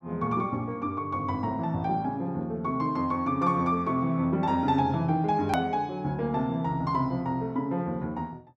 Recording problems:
click at an edit; at 5.5 s

